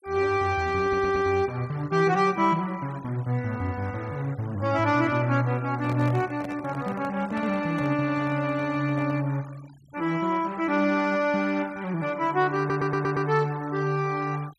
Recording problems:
noise reduction artefacts; signal-to-artefact ratio 23 dB
stutter; at 1 s and at 13 s
microphone handling noise; from 5.5 to 9.5 s; peak -8 dB vs average level

